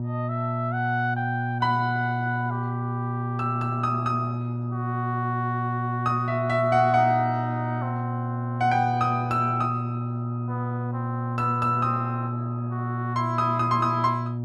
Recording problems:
hum; 60 Hz, harmonics up to 600 Hz, SNR 3 dB

